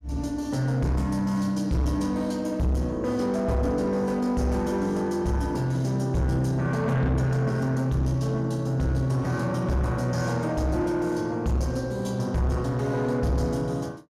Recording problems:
distorted audio; soft clipping, signal-to-distortion ratio 10 dB

